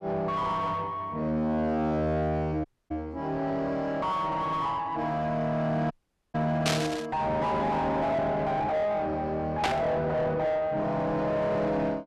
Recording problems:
distortion; soft clipping, signal-to-distortion ratio 6 dB
audio cutting out; at 2.5 s and at 6 s
static burst; at 6.5 s and at 9.5 s; peak +5 dB vs average level

